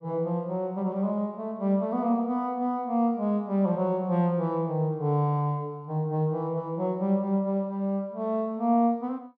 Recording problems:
none

